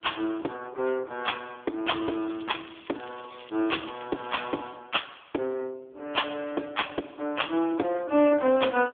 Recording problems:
telephone audio; 260 Hz to 3.4 kHz, AMR-NB
crackle; from 2 to 5 s; loose cable, SNR 21 dB

